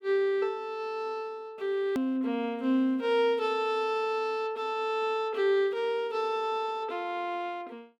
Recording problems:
edit click; at 2 s

